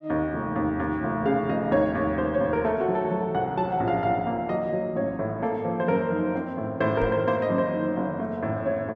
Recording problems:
microphone bump; at 7 s; peak -5 dB vs average level

